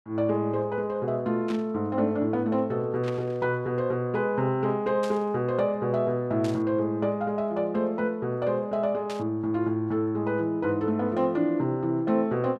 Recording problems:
burst of static; 5 times, first at 1.5 s; peak -9 dB vs average level

